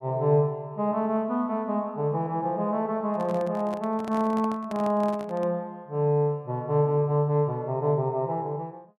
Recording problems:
microphone handling noise; from 3 to 5.5 s; peak -9 dB vs average level

